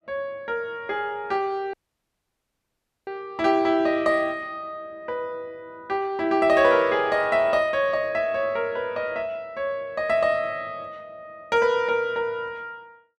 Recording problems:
audio cutting out; at 1.5 s for 1.5 s

